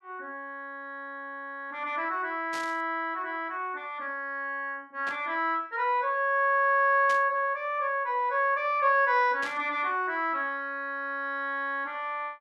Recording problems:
static burst; 4 times, first at 2.5 s; peak -7 dB vs average level

